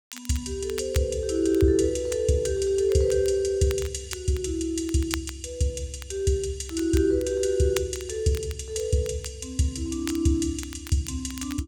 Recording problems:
crackling; vinyl, SNR 17 dB

